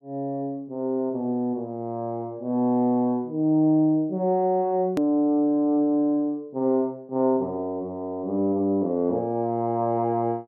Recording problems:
edit click; at 5 s

